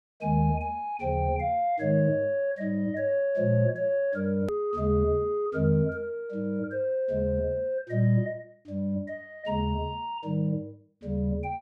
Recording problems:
click at an edit; at 4.5 s

